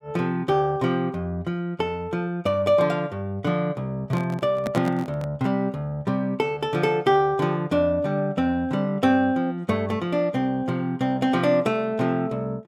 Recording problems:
handling noise; from 4 to 5.5 s; peak -2 dB vs average level

